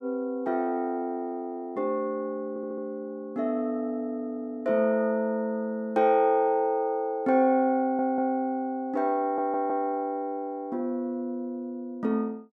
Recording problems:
audio stuttering; at 2.5 s, at 8 s and at 9 s

